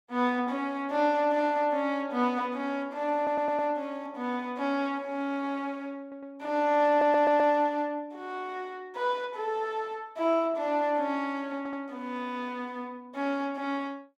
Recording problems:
stutter; 4 times, first at 3 s

